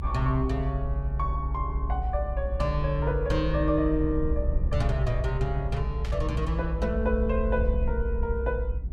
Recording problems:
rumble; below 62 Hz, strongest tone 60 Hz, SNR 1 dB
burst of static; at 6 s; peak -7 dB vs average level

